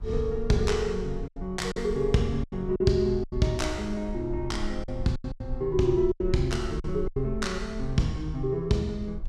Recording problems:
rumble; below 58 Hz, SNR 11 dB
lost packets; 8% of the sound replaced, filled with silence

